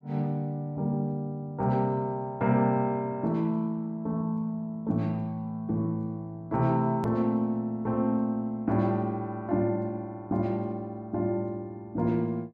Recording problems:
hard cut with a click; at 7 s

